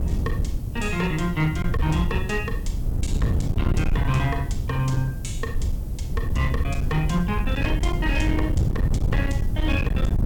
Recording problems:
distorted audio; hard clipping, uneven, signal-to-distortion ratio 11 dB
hiss; slope +5 dB per octave, SNR 24 dB
wind on the microphone; below 120 Hz, SNR 0 dB

